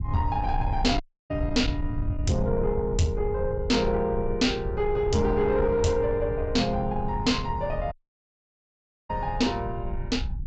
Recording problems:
treble cut off; nothing above 8 kHz
distorted audio; soft clipping, signal-to-distortion ratio 11 dB
rumble; below 100 Hz, SNR 7 dB
audio cutting out; at 1 s and at 8 s for 1 s

